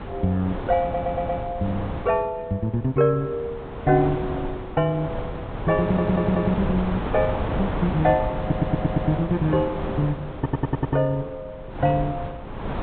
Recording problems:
treble cut off; nothing above 4 kHz
wind noise; below 690 Hz, SNR 7 dB
stutter; 4 times, first at 1 s

